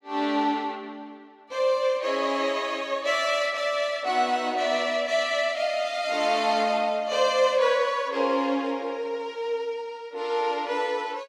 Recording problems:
none

